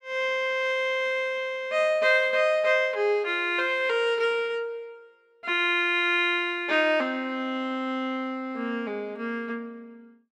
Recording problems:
none

